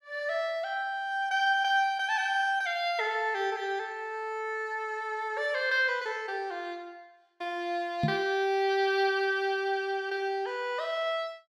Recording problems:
microphone thump; at 8 s; peak +5 dB vs average level

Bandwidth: 16 kHz